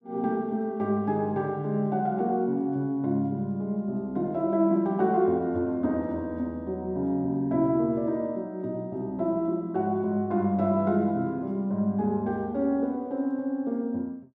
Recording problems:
none

